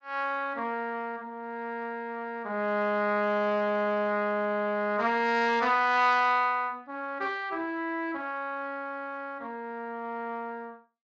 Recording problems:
codec artefacts; Speex, log-spectral distance 2 dB

